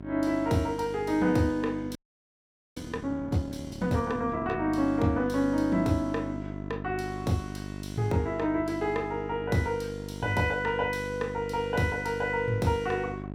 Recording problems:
electrical hum; 50 Hz, harmonics up to 1.4 kHz, SNR 10 dB
audio freezing; at 2 s for 1 s

